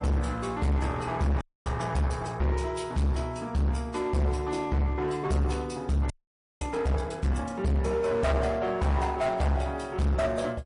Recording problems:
lossy compression; MP3, log-spectral distance 2 dB, nothing above 10.4 kHz
distortion; hard clipping, uneven, signal-to-distortion ratio 5 dB
frozen audio; at 1.5 s and at 6 s for 0.5 s

